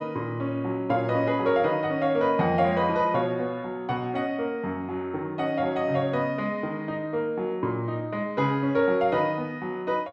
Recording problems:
none

